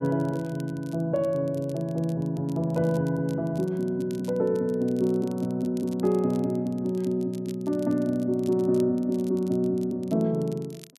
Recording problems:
crackle; vinyl, SNR 26 dB

